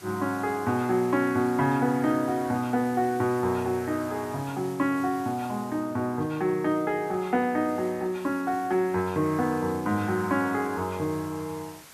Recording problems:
background hiss; slope -1 dB per octave, SNR 21 dB

